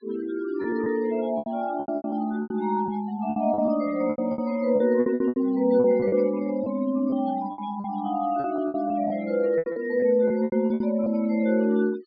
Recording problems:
low-pass filter; nothing above 5.5 kHz
denoising artefacts; signal-to-artefact ratio 24 dB
lost packets; 14% of the sound replaced, filled with repeated pitch periods

